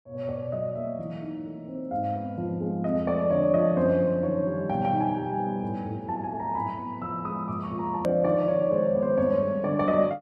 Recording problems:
click at an edit; at 8 s

